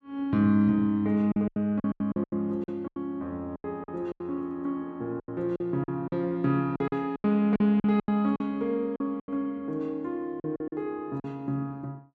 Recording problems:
lost packets; 13% of the sound replaced, filled with silence

